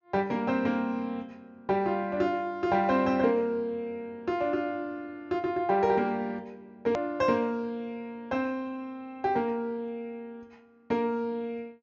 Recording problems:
treble cut off; nothing above 7.2 kHz
click at an edit; at 7 s

